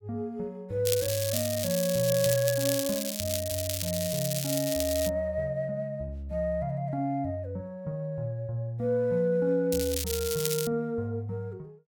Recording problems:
crackle; from 1 to 5 s and at 9.5 s; loose cable, SNR 3 dB

